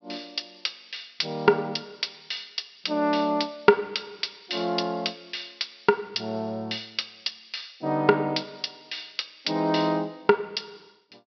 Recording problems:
low-pass filter; nothing above 5.5 kHz

